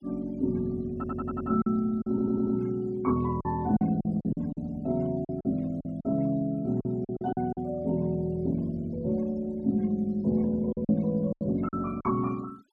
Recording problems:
denoising artefacts; signal-to-artefact ratio 28 dB
lost packets; 8% of the sound replaced, filled with silence
audio stuttering; at 1 s and at 2 s

